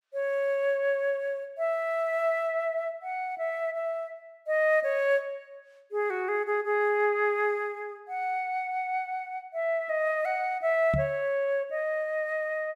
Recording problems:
microphone bump; at 11 s; peak +2 dB vs average level

